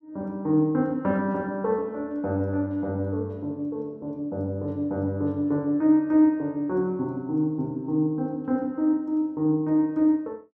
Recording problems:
none

